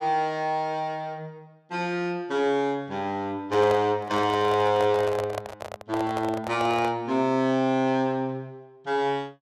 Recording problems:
handling noise; from 3.5 to 7 s; peak -2 dB vs average level

